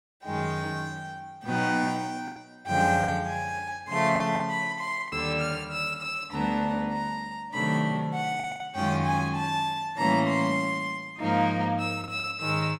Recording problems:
packet loss; 4% of the sound replaced, filled with the last packet

